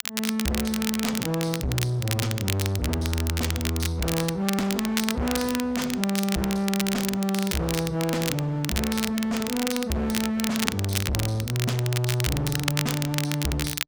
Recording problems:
distortion; hard clipping, signal-to-distortion ratio 6 dB
crackle; vinyl, SNR 4 dB

